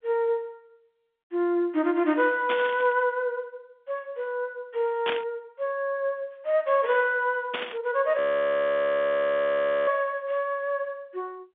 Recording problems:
phone line; 150 Hz to 3.7 kHz, G.711
static burst; at 2.5 s, at 5 s and at 7.5 s; peak +2 dB vs average level
audio freezing; at 8 s for 1.5 s

